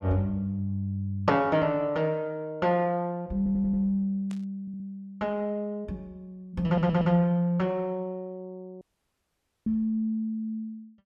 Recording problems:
audio stuttering; at 3.5 s, at 4.5 s and at 6.5 s
burst of static; at 4.5 s; peak -15 dB vs average level
dropout; at 9 s for 1 s

